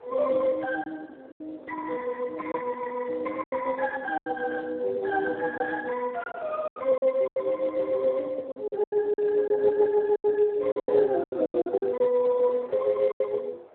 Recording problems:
telephone audio; 320 Hz to 2 kHz, Speex
wind on the microphone; below 770 Hz, SNR 23 dB
packet loss; 10% of the sound replaced, filled with silence

